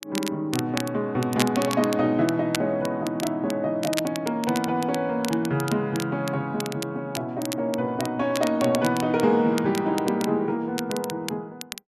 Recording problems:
crackle; vinyl, SNR 11 dB

